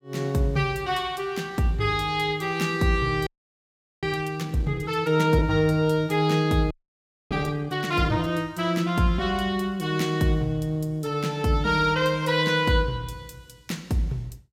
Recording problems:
frozen audio; at 3.5 s for 1 s and at 6.5 s for 0.5 s

